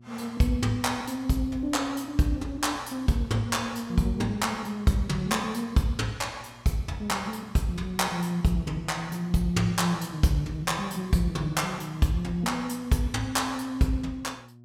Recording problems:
hum; 60 Hz, harmonics up to 600 Hz, SNR 23 dB

